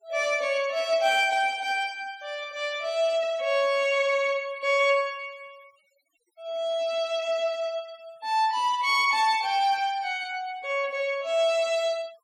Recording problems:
noise reduction artefacts; signal-to-artefact ratio 24 dB

